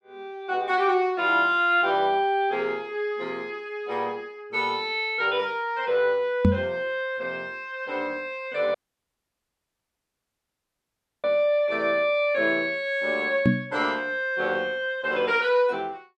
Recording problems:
microphone thump; at 6.5 s and at 13 s; peak +8 dB vs average level
dropout; at 9 s for 2.5 s

